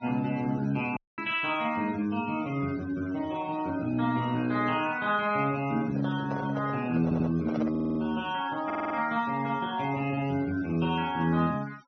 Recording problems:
treble cut off; nothing above 6.2 kHz
noise reduction artefacts; signal-to-artefact ratio 21 dB
audio cutting out; at 1 s
handling noise; from 6 to 8 s; peak -3 dB vs average level
stutter; at 7 s, at 7.5 s and at 8.5 s

